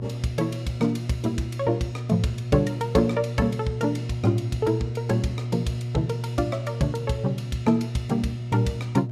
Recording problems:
hum; 60 Hz, harmonics up to 600 Hz, SNR 5 dB

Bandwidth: 14.5 kHz